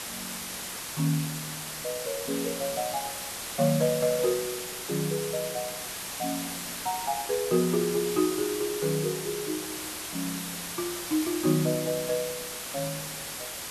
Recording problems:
background hiss; slope -1 dB per octave, SNR 4 dB

